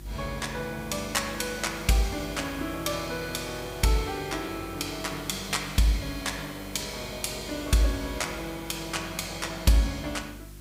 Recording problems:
electrical hum; 50 Hz, harmonics up to 350 Hz, SNR 17 dB
hiss; slope -1 dB per octave, SNR 18 dB

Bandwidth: 15.5 kHz